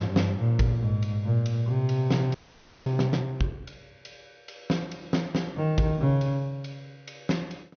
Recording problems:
low-pass filter; nothing above 6.4 kHz
frozen audio; at 2.5 s for 0.5 s

